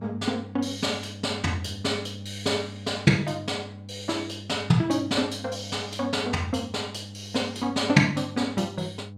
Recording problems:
hum; 50 Hz, harmonics up to 500 Hz, SNR 14 dB

